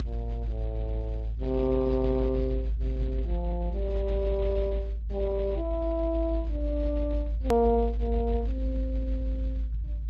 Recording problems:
codec artefacts; Speex, log-spectral distance 2 dB, nothing above 13.1 kHz
low-frequency rumble; below 56 Hz, strongest tone 54 Hz, SNR 2 dB
hard cut with a click; at 7.5 s

